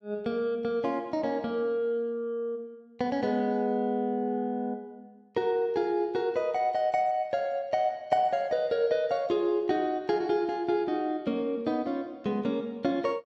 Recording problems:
none

